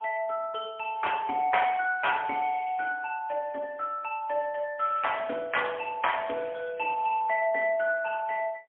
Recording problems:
phone line; 240 Hz to 3.3 kHz, AMR-NB, then MP3

